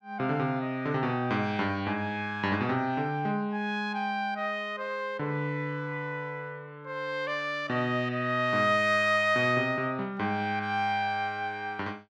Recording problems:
none

